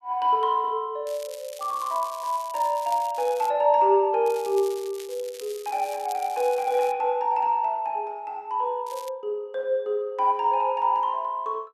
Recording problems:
crackle; from 1 to 3.5 s, from 4.5 to 7 s and at 9 s; loose cable, SNR 19 dB

